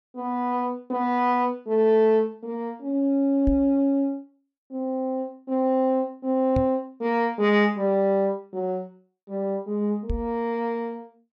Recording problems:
knock on the microphone; at 3.5 s, at 6.5 s and at 10 s; peak 0 dB vs average level

